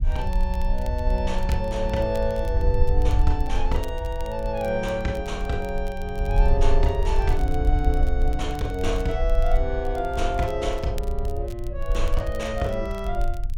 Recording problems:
rumble; below 56 Hz, strongest tone 22 Hz, SNR 0 dB
crackling; vinyl, SNR 22 dB

